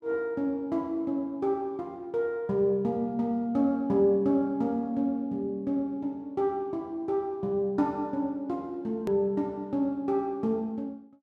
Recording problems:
edit click; at 9 s

